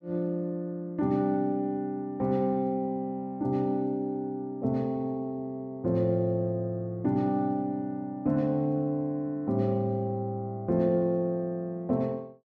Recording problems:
none

